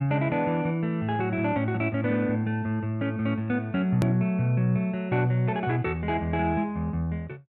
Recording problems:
hard cut with a click; at 4 s

